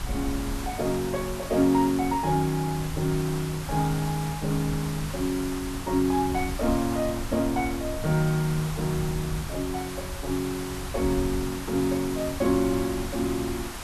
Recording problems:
background hiss; SNR 10 dB
wind on the microphone; below 94 Hz, SNR 12 dB

